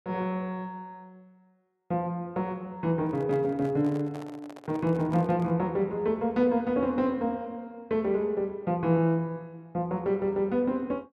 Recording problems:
handling noise; from 3 to 5.5 s; peak -11 dB vs average level

